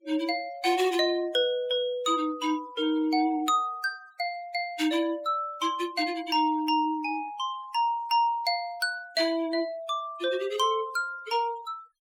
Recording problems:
denoising artefacts; signal-to-artefact ratio 22 dB

